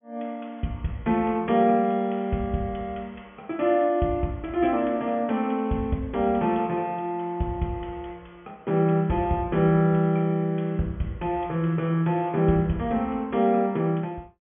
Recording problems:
low-pass filter; nothing above 3.3 kHz

